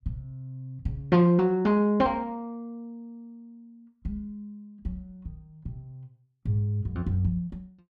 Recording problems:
none

